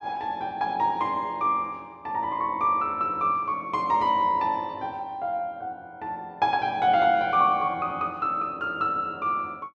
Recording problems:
none

